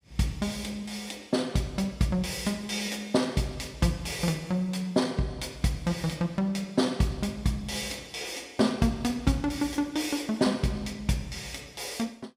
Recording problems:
none

